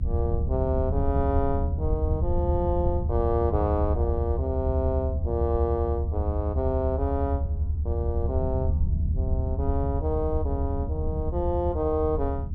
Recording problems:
rumble; below 82 Hz, SNR -1 dB

